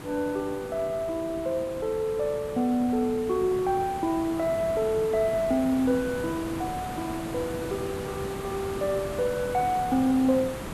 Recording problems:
hiss; slope -6 dB per octave, SNR 10 dB

